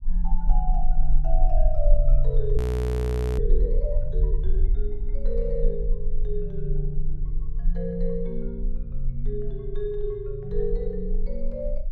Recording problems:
low-frequency rumble; below 36 Hz, strongest tone 18 Hz, SNR -4 dB
frozen audio; at 2.5 s for 1 s

